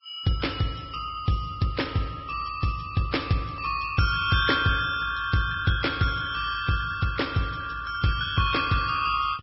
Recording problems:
codec artefacts; MP2, then Vorbis, log-spectral distance 6 dB, nothing above 5.5 kHz

